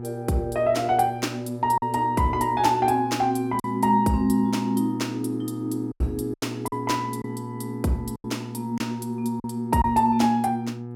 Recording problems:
hum; 60 Hz, harmonics up to 840 Hz, SNR 11 dB
lost packets; 4% of the sound replaced, filled with silence

